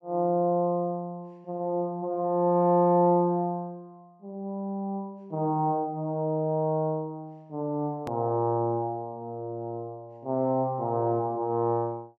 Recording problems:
click at an edit; at 8 s

